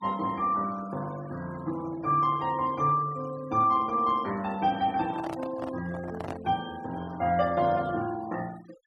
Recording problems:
denoising artefacts; signal-to-artefact ratio 20 dB
handling noise; from 5 to 6.5 s; peak -4 dB vs average level

